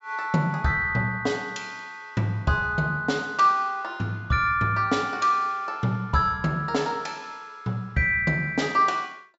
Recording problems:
low-pass filter; nothing above 8 kHz

